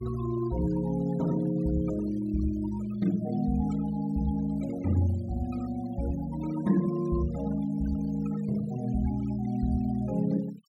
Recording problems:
denoising artefacts; signal-to-artefact ratio 19 dB

